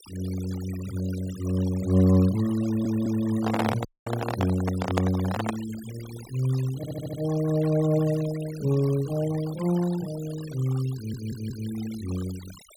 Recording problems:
noise reduction artefacts; signal-to-artefact ratio 17 dB
stutter; at 2.5 s, at 7 s and at 11 s
handling noise; from 3.5 to 5.5 s; peak +4 dB vs average level
audio cutting out; at 4 s

